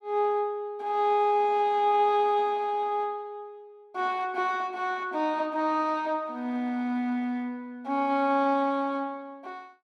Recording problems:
none

